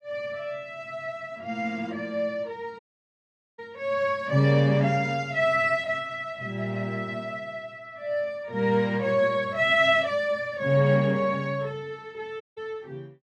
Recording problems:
audio cutting out; at 3 s for 1 s and at 12 s

